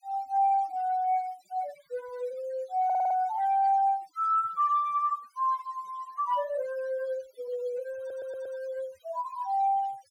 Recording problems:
noise reduction artefacts; signal-to-artefact ratio 24 dB
audio stuttering; at 3 s and at 8 s

